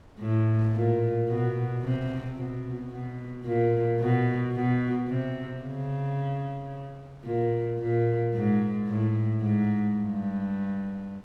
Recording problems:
wind on the microphone; below 680 Hz, SNR 25 dB

